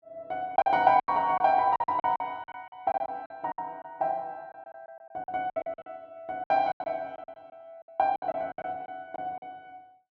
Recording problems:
lost packets; 16% of the sound replaced, filled with silence

